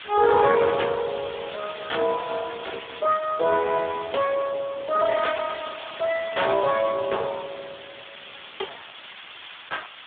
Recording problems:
phone line; 340 Hz to 3.7 kHz, Speex
background hiss; SNR 13 dB

